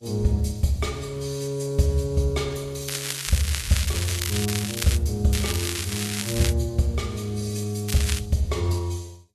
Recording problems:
codec artefacts; Vorbis, log-spectral distance 6 dB, nothing above 12.3 kHz
crackle; from 3 to 5 s, from 5.5 to 6.5 s and at 8 s; loose cable, SNR 3 dB

